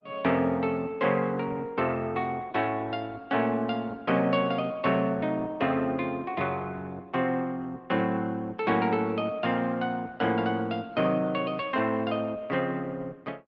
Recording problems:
codec artefacts; Opus, log-spectral distance 2 dB

